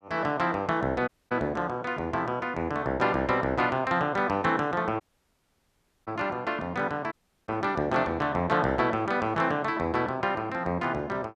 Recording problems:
dropout; at 1 s, at 5 s for 1 s and at 7 s

